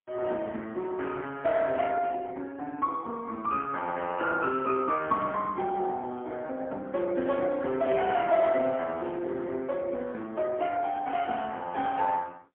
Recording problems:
phone line; 220 Hz to 3 kHz, AMR-NB, then MP3

